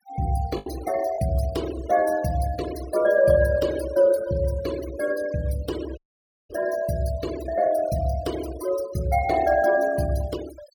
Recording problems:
noise reduction artefacts; signal-to-artefact ratio 17 dB
packet loss; 1.2% of the sound replaced, filled with the last packet
dropout; at 6 s for 0.5 s

